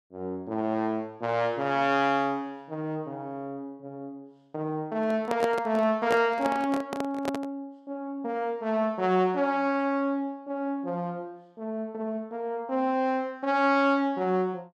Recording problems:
handling noise; from 5 to 7.5 s; peak +2 dB vs average level

